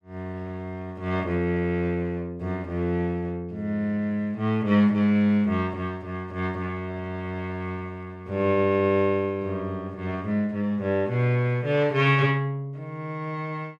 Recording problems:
none

